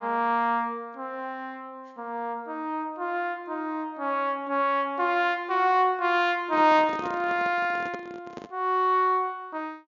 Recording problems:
low-pass filter; nothing above 7 kHz
microphone handling noise; from 6.5 to 8.5 s; peak -7 dB vs average level

